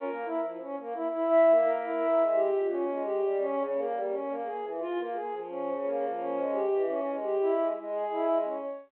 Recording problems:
phone line; 300 Hz to 3.1 kHz, G.726

